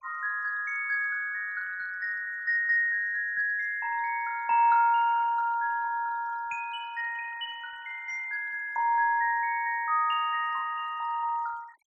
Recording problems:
noise reduction artefacts; signal-to-artefact ratio 22 dB

